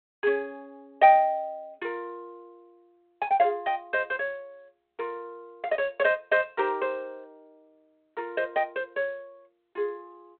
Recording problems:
telephone audio; 300 Hz to 3.6 kHz, G.726

